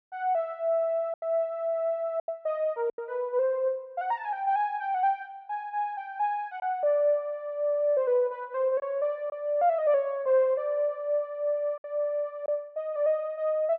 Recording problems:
lost packets; 3% of the sound replaced, filled with silence

